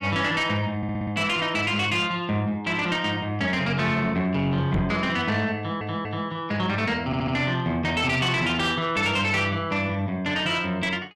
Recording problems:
distortion; soft clipping, signal-to-distortion ratio 11 dB
stutter; at 1 s, at 5.5 s and at 7 s
microphone thump; at 4.5 s; peak +1 dB vs average level

